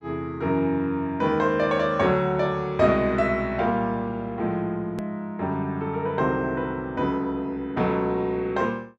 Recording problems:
edit click; at 5 s

